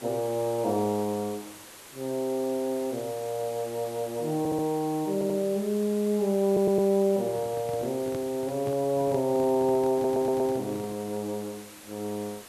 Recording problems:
hiss; slope -2 dB per octave, SNR 17 dB
stutter; 4 times, first at 4.5 s
microphone handling noise; from 7 to 11 s; peak -7 dB vs average level

